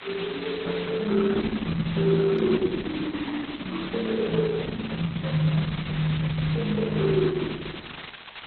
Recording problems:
lossy compression; Opus, then AAC, log-spectral distance 15 dB
background hiss; SNR 12 dB

